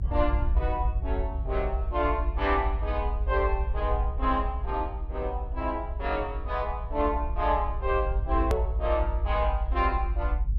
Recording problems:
low-frequency rumble; below 62 Hz, SNR 1 dB
edit click; at 8.5 s

